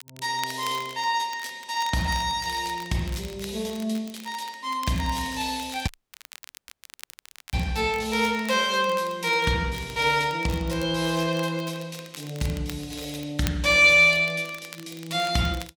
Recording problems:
crackling; vinyl, SNR 20 dB
audio cutting out; at 6 s for 1.5 s

